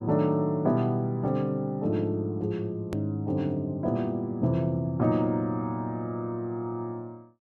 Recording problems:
click at an edit; at 3 s

